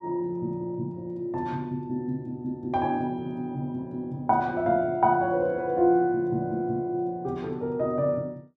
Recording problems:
none

